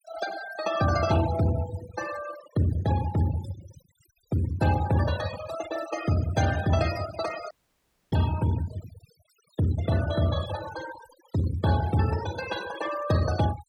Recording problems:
noise reduction artefacts; signal-to-artefact ratio 12 dB
dropout; at 7.5 s for 0.5 s

